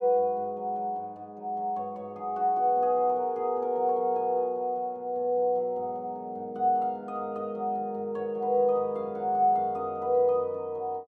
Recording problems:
none

